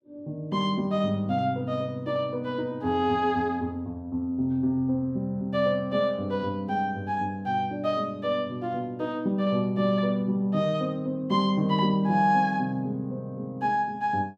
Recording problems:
none

